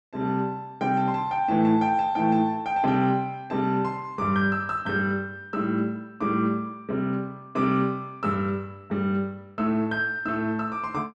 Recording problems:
none

